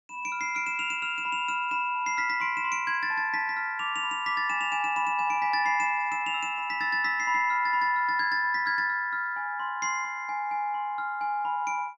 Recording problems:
none

